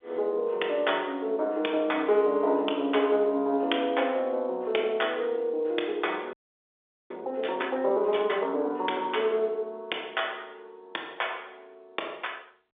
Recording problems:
phone line; 320 Hz to 3.6 kHz, G.711
audio freezing; at 6.5 s for 1 s

